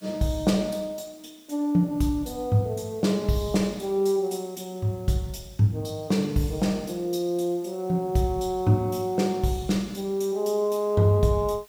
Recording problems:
hiss; slope 0 dB per octave, SNR 28 dB

